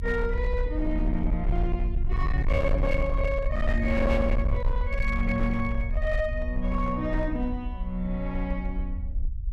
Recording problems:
distortion; hard clipping, signal-to-distortion ratio 10 dB
low-frequency rumble; below 62 Hz, SNR 1 dB

